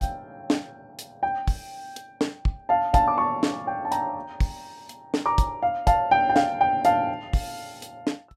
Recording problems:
none

